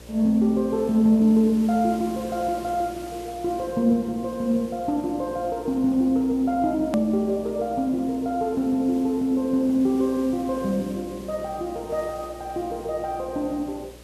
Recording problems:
hum; 60 Hz, harmonics up to 600 Hz, SNR 23 dB
background hiss; slope -2 dB per octave, SNR 23 dB
click at an edit; at 7 s

